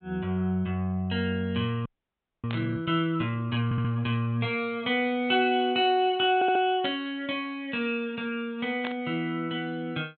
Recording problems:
treble cut off; nothing above 4 kHz
audio freezing; at 2 s for 0.5 s
static burst; at 2.5 s, at 7 s and at 9 s; peak -4 dB vs average level
stutter; at 3.5 s and at 6.5 s

